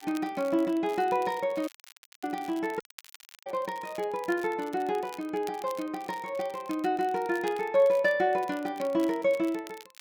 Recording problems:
crackle; vinyl, SNR 22 dB
audio cutting out; at 1.5 s for 0.5 s and at 3 s for 0.5 s

